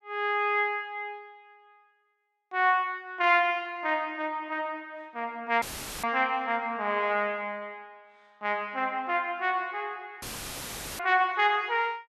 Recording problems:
audio cutting out; at 5.5 s and at 10 s for 1 s; filled with static

